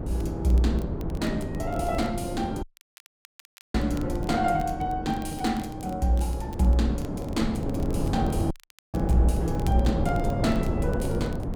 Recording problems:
wind on the microphone; below 310 Hz, SNR 3 dB
crackle; vinyl, SNR 25 dB
dropout; at 2.5 s for 1 s and at 8.5 s

